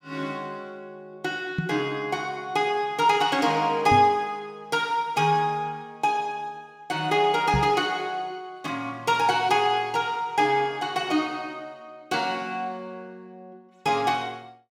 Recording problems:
microphone thump; at 1.5 s, at 4 s and at 7.5 s; peak +2 dB vs average level

